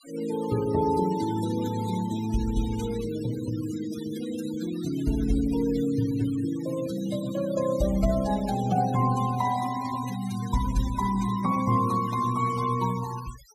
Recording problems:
noise reduction artefacts; signal-to-artefact ratio 14 dB

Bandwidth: 15 kHz